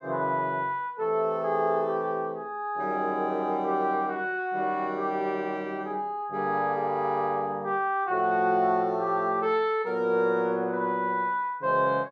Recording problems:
none

